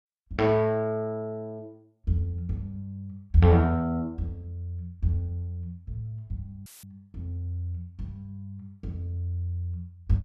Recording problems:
audio cutting out; at 6.5 s; filled with static

